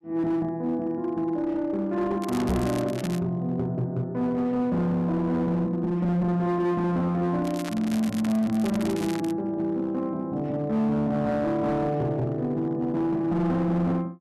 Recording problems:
distortion; hard clipping, uneven, signal-to-distortion ratio 11 dB
crackling; at 2 s and from 7.5 to 9.5 s; loose cable, SNR 14 dB
microphone bump; at 2.5 s; peak +3 dB vs average level

